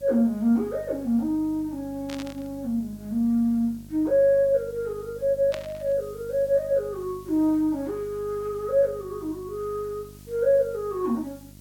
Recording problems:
mains hum; 50 Hz, harmonics up to 700 Hz, SNR 21 dB
background hiss; slope +3 dB per octave, SNR 28 dB
static burst; at 2 s and at 5.5 s; peak -7 dB vs average level

